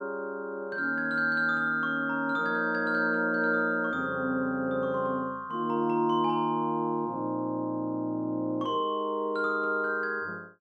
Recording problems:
none

